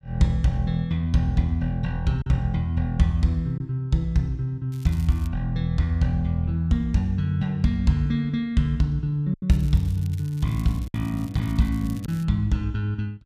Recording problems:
packet loss; 1.7% of the sound replaced, filled with silence
crackling; at 4.5 s and from 9.5 to 12 s; loose cable, SNR 25 dB

